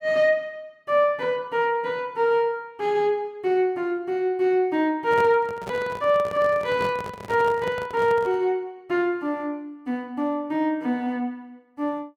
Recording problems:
microphone handling noise; from 5 to 8.5 s; peak -6 dB vs average level

